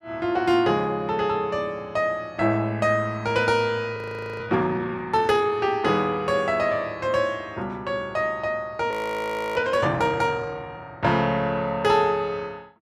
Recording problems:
frozen audio; at 4 s and at 9 s for 0.5 s

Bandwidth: 14.5 kHz